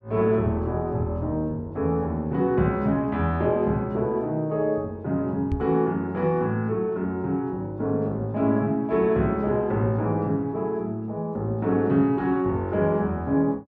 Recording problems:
microphone bump; at 5.5 s; peak +1 dB vs average level

